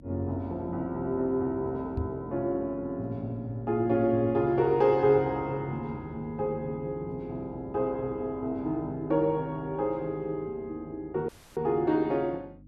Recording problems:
hum; 50 Hz, harmonics up to 300 Hz, SNR 21 dB
microphone thump; at 2 s; peak +1 dB vs average level
audio cutting out; at 11 s

